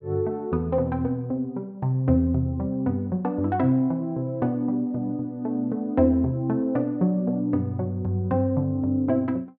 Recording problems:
none

